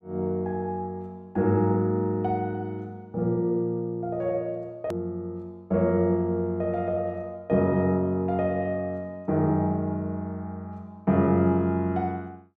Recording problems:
edit click; at 5 s

